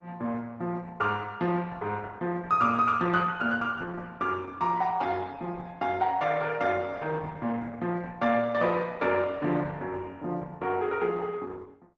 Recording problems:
lossy compression; Opus, log-spectral distance 3 dB, nothing above 7.6 kHz

